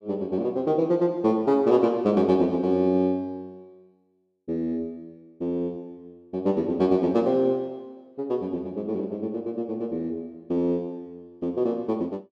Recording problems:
none

